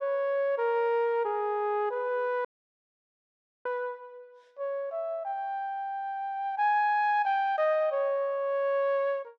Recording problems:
dropout; at 2.5 s for 1 s

